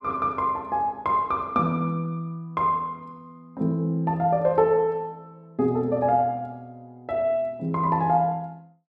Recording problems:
none

